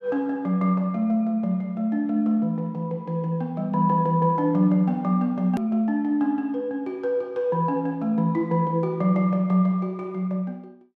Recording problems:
edit click; at 5.5 s

